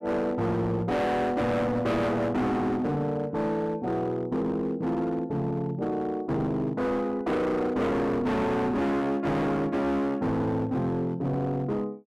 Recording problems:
distorted audio; hard clipping, signal-to-distortion ratio 7 dB

